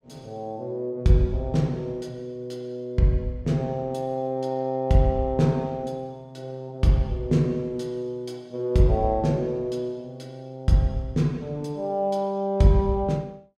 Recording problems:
none

